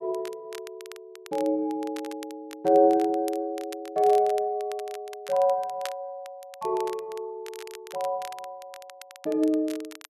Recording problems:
crackling; vinyl, SNR 20 dB

